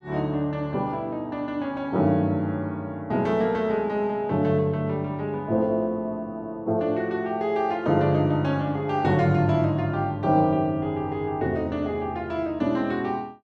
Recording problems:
none

